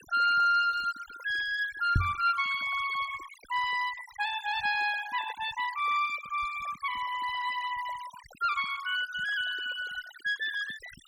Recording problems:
noise reduction artefacts; signal-to-artefact ratio 15 dB
knock on the microphone; at 2 s; peak +7 dB vs average level

